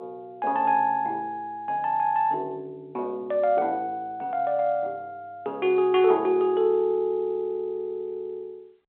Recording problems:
phone line; 220 Hz to 3.9 kHz, G.711

